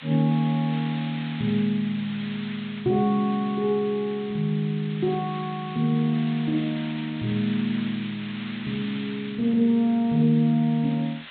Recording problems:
low-pass filter; nothing above 4 kHz
background hiss; SNR 15 dB

